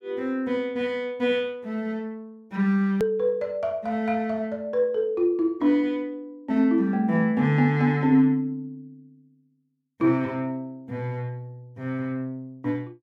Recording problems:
click at an edit; at 3 s

